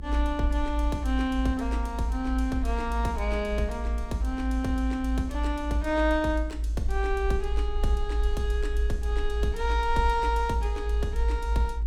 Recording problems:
hum; 60 Hz, harmonics up to 900 Hz, SNR 22 dB
low-frequency rumble; below 56 Hz, strongest tone 54 Hz, SNR 1 dB

